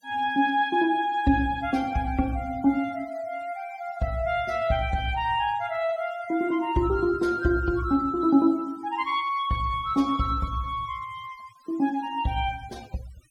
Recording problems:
denoising artefacts; signal-to-artefact ratio 24 dB

